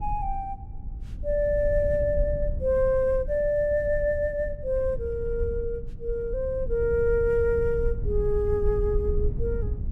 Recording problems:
low-frequency rumble; below 70 Hz, SNR 7 dB

